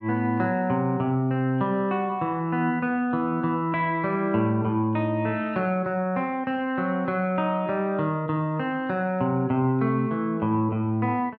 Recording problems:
none

